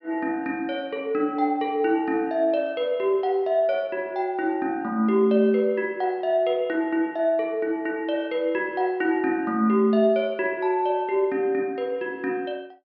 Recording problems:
treble missing; nothing above 5.5 kHz

